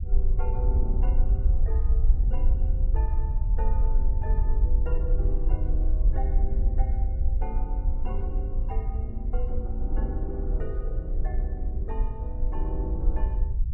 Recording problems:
low-frequency rumble; below 56 Hz, SNR -11 dB

